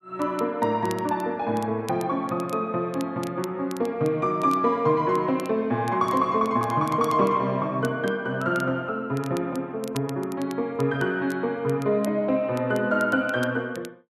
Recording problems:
crackle; vinyl, SNR 22 dB

